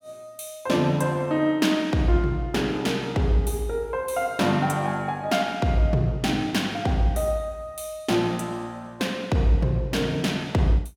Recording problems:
none

